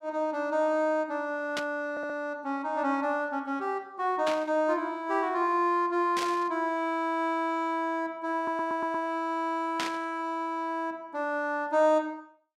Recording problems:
static burst; 4 times, first at 1.5 s; peak 0 dB vs average level
audio stuttering; at 2 s and at 8.5 s

